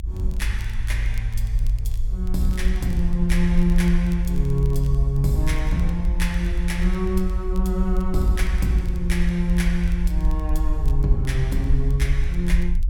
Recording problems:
low-frequency rumble; below 52 Hz, SNR 0 dB
crackling; vinyl, SNR 27 dB

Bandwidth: 17 kHz